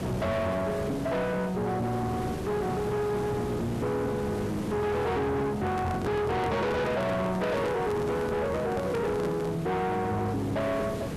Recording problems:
distorted audio; soft clipping, signal-to-distortion ratio 7 dB
hiss; slope -7 dB per octave, SNR 8 dB
microphone handling noise; from 5.5 to 9.5 s; peak -1 dB vs average level

